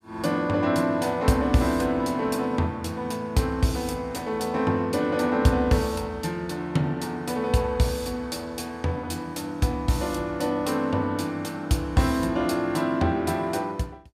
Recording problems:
none

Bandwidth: 15.5 kHz